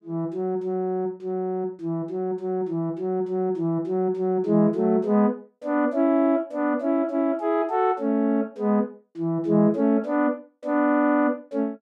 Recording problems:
none

